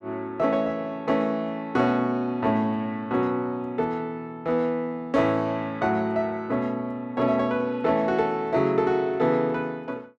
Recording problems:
none

